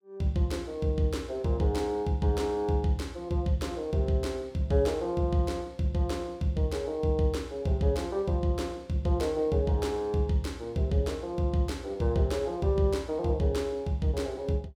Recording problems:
none

